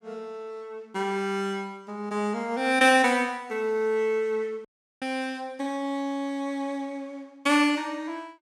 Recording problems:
dropout; at 4.5 s

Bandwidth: 17 kHz